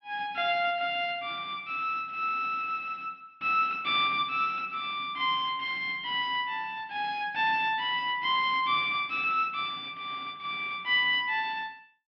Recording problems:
low-pass filter; nothing above 5.5 kHz

